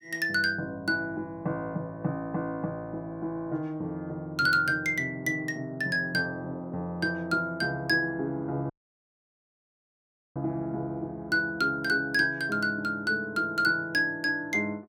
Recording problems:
audio cutting out; at 8.5 s for 1.5 s

